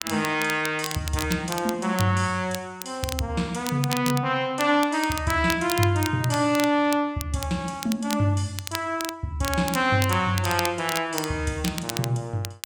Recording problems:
crackle; vinyl, SNR 10 dB

